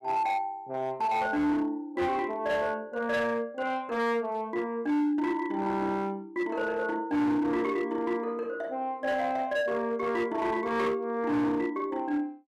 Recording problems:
distorted audio; hard clipping, signal-to-distortion ratio 11 dB

